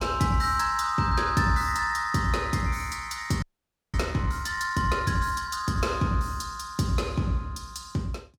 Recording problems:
audio freezing; at 3.5 s for 0.5 s

